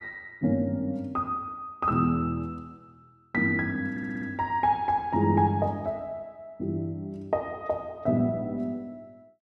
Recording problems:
audio stuttering; at 4 s

